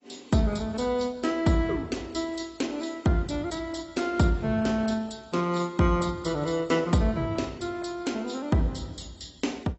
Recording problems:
codec artefacts; AAC, log-spectral distance 5 dB, nothing above 7.8 kHz

